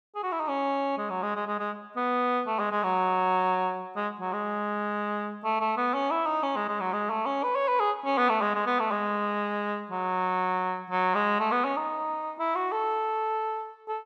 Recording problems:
none

